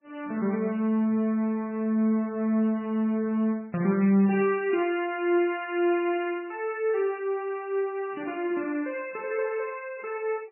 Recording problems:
lossy codec; MP3, log-spectral distance 2 dB, nothing above 2.4 kHz

